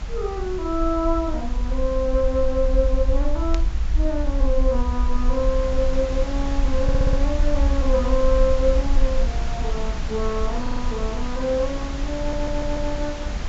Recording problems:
low-pass filter; nothing above 7.5 kHz
hiss; slope -4 dB per octave, SNR 9 dB
low-frequency rumble; below 50 Hz, SNR 1 dB
burst of static; at 3.5 s; peak -4 dB vs average level
stutter; at 7 s, at 11 s and at 12 s

